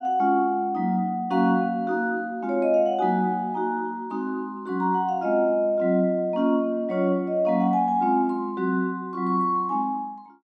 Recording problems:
none

